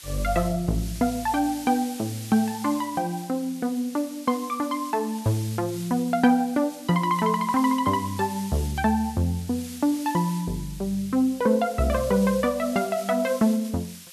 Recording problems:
hiss; slope +4 dB per octave, SNR 16 dB

